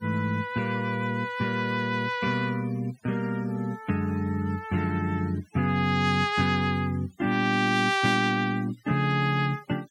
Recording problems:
noise reduction artefacts; signal-to-artefact ratio 23 dB

